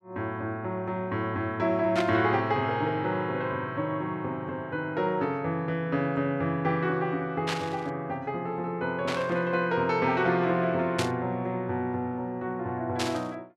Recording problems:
static burst; 5 times, first at 2 s; peak +2 dB vs average level

